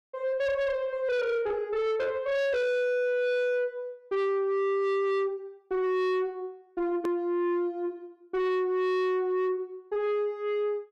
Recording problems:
distortion; soft clipping, signal-to-distortion ratio 6 dB
click at an edit; at 7 s

